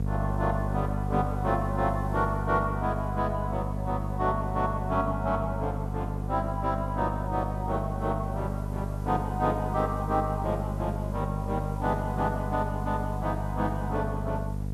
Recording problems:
hum; 50 Hz, harmonics up to 500 Hz, SNR 2 dB
background hiss; slope +4 dB per octave, SNR 27 dB

